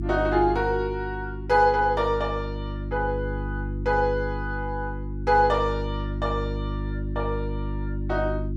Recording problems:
mains hum; 50 Hz, harmonics up to 350 Hz, SNR 6 dB

